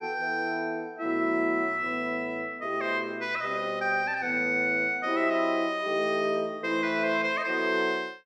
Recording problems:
none

